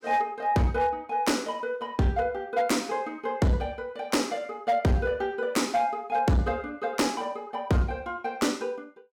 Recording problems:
distorted audio; hard clipping, signal-to-distortion ratio 11 dB

